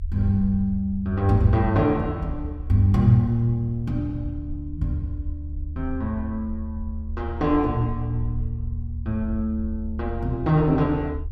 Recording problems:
low-frequency rumble; below 76 Hz, strongest tone 76 Hz, SNR 10 dB

